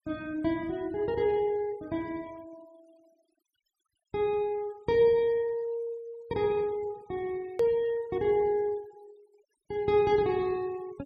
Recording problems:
denoising artefacts; signal-to-artefact ratio 26 dB
click at an edit; at 7.5 s

